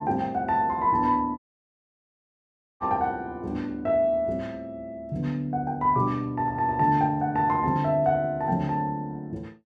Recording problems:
audio cutting out; at 1.5 s for 1.5 s

